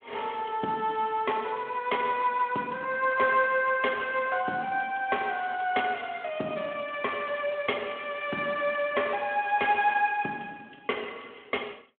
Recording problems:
telephone audio; 220 Hz to 3.3 kHz, Speex

